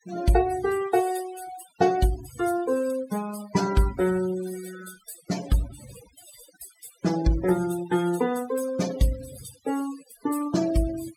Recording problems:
noise reduction artefacts; signal-to-artefact ratio 14 dB

